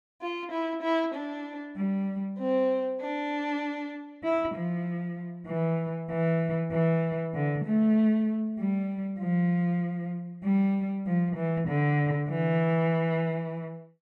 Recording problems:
none

